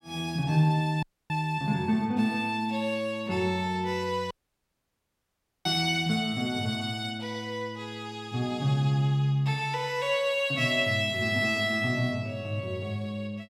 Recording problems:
dropout; at 1 s and at 4.5 s for 1.5 s

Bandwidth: 16 kHz